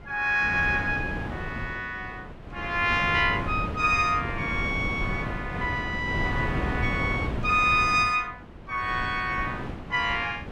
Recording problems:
wind noise; below 470 Hz, SNR 8 dB

